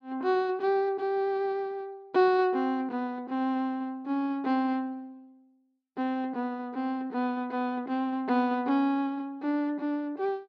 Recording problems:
none

